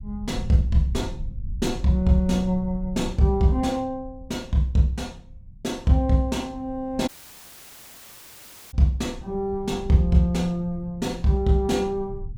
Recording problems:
rumble; below 88 Hz, SNR 14 dB
audio cutting out; at 7 s for 1.5 s

